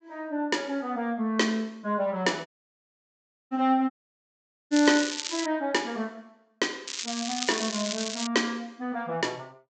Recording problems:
treble missing; nothing above 8 kHz
dropout; at 2.5 s for 1 s and at 4 s for 1 s
crackling; at 4.5 s and from 7 to 8.5 s; loose cable, SNR 4 dB

